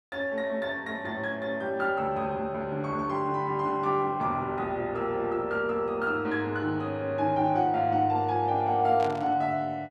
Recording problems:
burst of static; at 9 s; peak -8 dB vs average level

